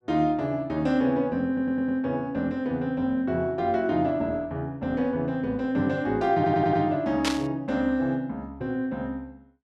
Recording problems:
stutter; at 1.5 s and at 6.5 s
burst of static; at 7 s; peak +3 dB vs average level

